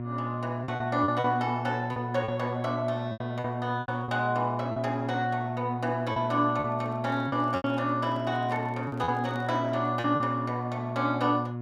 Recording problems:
hum; 60 Hz, harmonics up to 1.1 kHz, SNR 5 dB
lost packets; 8% of the sound replaced, filled with repeated pitch periods
handling noise; from 6.5 to 10 s; peak -10 dB vs average level

